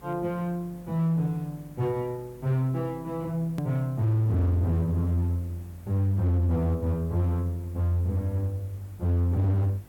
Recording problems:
distortion; hard clipping, signal-to-distortion ratio 10 dB
electrical hum; 50 Hz, harmonics up to 350 Hz, SNR 27 dB
background hiss; slope -6 dB per octave, SNR 27 dB
edit click; at 3.5 s

